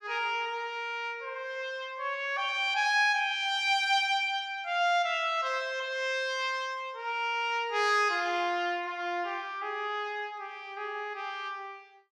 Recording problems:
none

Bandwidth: 14.5 kHz